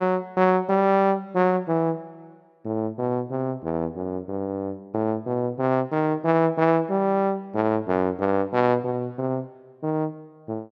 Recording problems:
none

